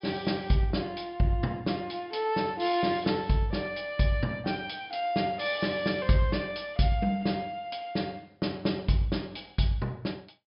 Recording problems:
treble cut off; nothing above 5.5 kHz

